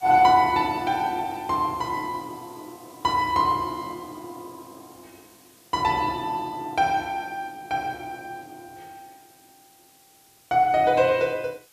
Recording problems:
hiss; slope +1 dB per octave, SNR 28 dB

